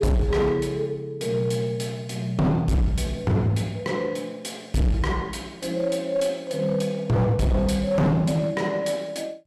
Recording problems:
distortion; hard clipping, uneven, signal-to-distortion ratio 7 dB

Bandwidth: 14.5 kHz